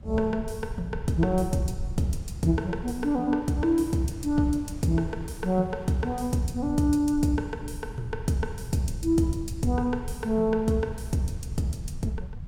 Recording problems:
rumble; below 100 Hz, SNR 12 dB
wind on the microphone; below 1.1 kHz, SNR 27 dB

